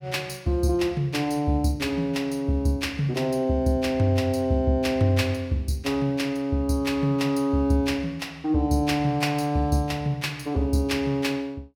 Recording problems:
none

